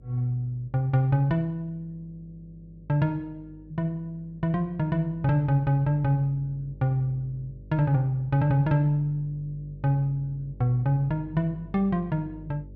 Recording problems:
hum; 50 Hz, harmonics up to 600 Hz, SNR 21 dB

